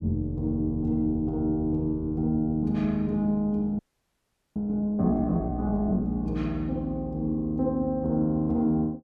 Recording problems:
frozen audio; at 4 s for 1 s

